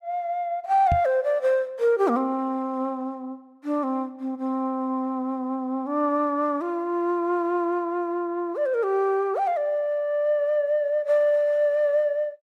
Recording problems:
knock on the microphone; at 1 s; peak +2 dB vs average level

